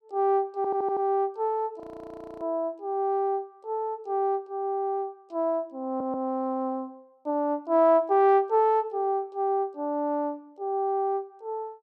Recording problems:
stutter; at 0.5 s and at 6 s
audio freezing; at 2 s for 0.5 s

